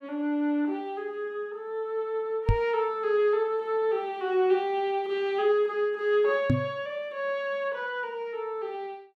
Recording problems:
microphone bump; at 2.5 s and at 6.5 s; peak +8 dB vs average level

